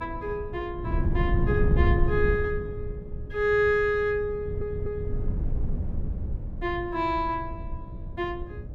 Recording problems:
electrical hum; 60 Hz, harmonics up to 600 Hz, SNR 20 dB
wind noise; below 120 Hz, SNR 3 dB
stutter; at 4.5 s

